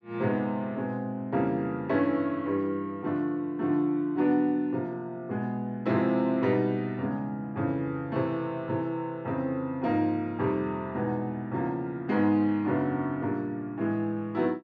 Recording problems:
none

